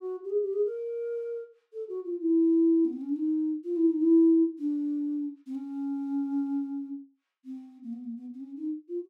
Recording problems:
none

